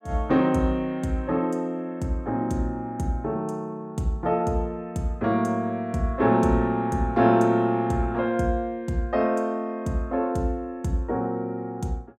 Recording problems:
none

